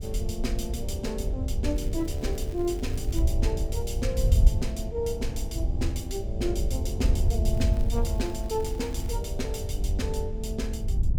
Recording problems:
wind on the microphone; below 78 Hz, SNR -3 dB
crackle; from 2 to 3 s and from 7.5 to 9 s; loose cable, SNR 20 dB

